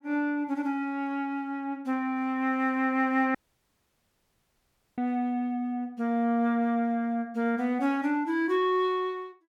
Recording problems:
dropout; at 3.5 s for 1.5 s

